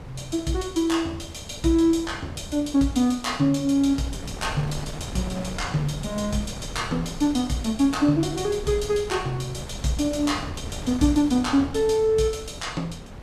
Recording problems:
wind on the microphone; below 420 Hz, SNR 13 dB

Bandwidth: 14.5 kHz